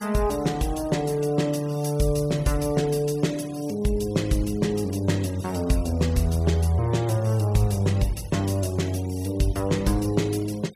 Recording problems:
denoising artefacts; signal-to-artefact ratio 21 dB

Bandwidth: 15 kHz